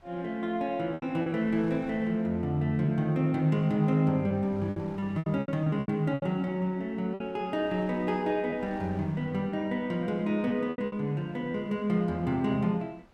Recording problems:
wind noise; below 1.2 kHz, SNR 27 dB
packet loss; 7% of the sound replaced, filled with repeated pitch periods

